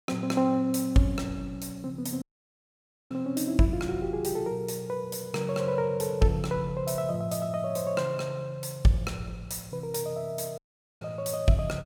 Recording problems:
dropout; at 2 s for 1 s and at 11 s

